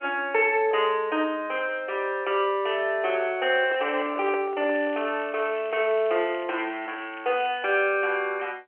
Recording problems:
phone line; 320 Hz to 3.1 kHz, G.711
handling noise; from 3.5 to 5 s; peak -5 dB vs average level
crackle; from 4.5 to 7.5 s; loose cable, SNR 21 dB

